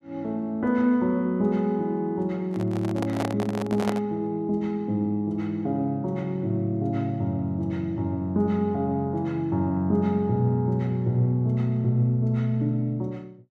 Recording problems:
microphone handling noise; from 2.5 to 4 s; peak +1 dB vs average level

